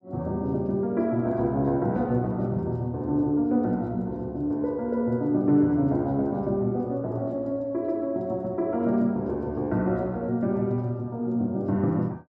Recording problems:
none

